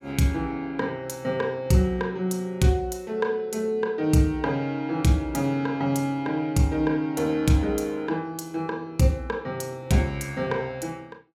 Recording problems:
none

